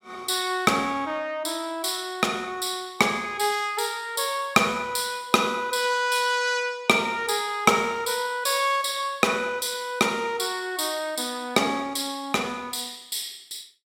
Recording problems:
none

